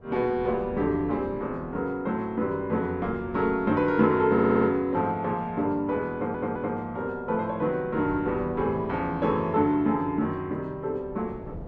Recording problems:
wind noise; below 360 Hz, SNR 19 dB
audio stuttering; at 4.5 s and at 6 s

